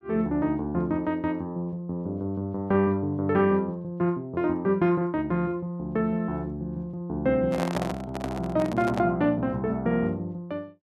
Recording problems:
microphone handling noise; from 7.5 to 9 s; peak +1 dB vs average level

